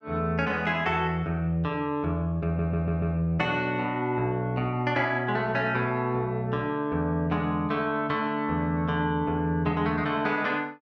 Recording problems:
stutter; at 2.5 s

